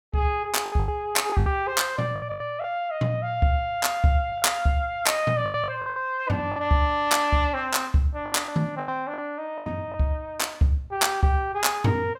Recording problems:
packet loss; 8% of the sound replaced, filled with the last packet

